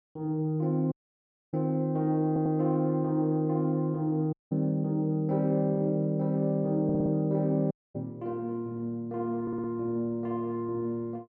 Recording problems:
dropout; at 1 s for 0.5 s, at 4.5 s and at 7.5 s
audio stuttering; at 2.5 s, at 7 s and at 9.5 s

